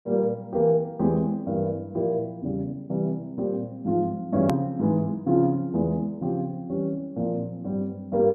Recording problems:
hard cut with a click; at 4.5 s

